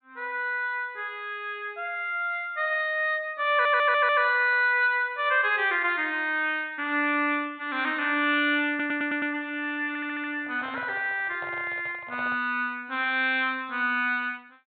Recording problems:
treble missing; nothing above 4 kHz
audio stuttering; at 3.5 s, at 8.5 s and at 10 s
handling noise; from 10 to 12 s; peak -11 dB vs average level

